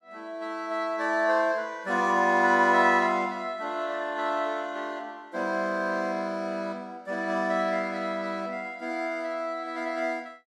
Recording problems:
none

